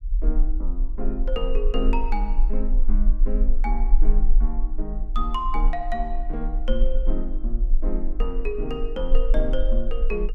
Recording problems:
rumble; below 34 Hz, strongest tone 18 Hz, SNR -5 dB

